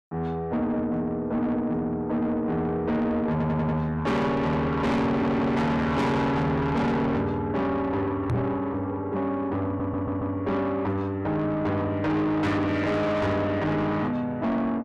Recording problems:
distorted audio; soft clipping, signal-to-distortion ratio 6 dB
stutter; at 3.5 s, at 5 s and at 9.5 s
microphone bump; at 8.5 s; peak +3 dB vs average level

